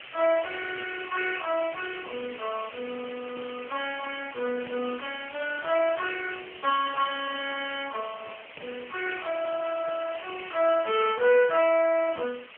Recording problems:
telephone audio; 340 Hz to 3.1 kHz, AMR-NB
hiss; SNR 15 dB

